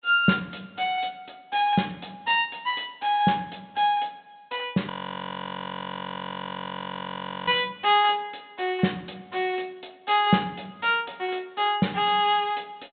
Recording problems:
low-pass filter; nothing above 4 kHz
audio freezing; at 5 s for 2.5 s

